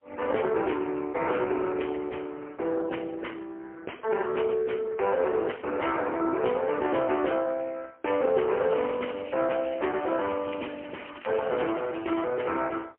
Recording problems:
phone line; 300 Hz to 3 kHz, AMR-NB, then MP3
crackling; at 8.5 s and from 9.5 to 12 s; loose cable, SNR 19 dB

